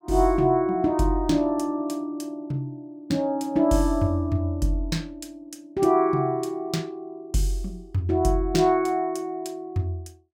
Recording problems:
none

